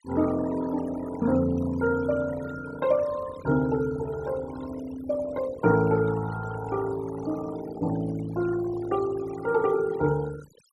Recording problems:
denoising artefacts; signal-to-artefact ratio 15 dB

